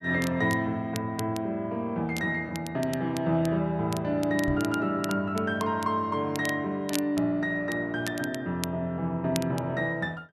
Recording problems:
crackling; vinyl, SNR 14 dB
microphone bump; at 4.5 s; peak +2 dB vs average level

